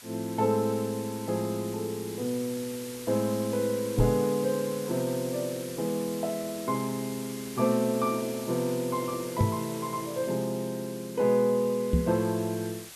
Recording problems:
hiss; slope +1 dB per octave, SNR 13 dB
microphone bump; at 4 s, at 9.5 s and at 12 s; peak +8 dB vs average level

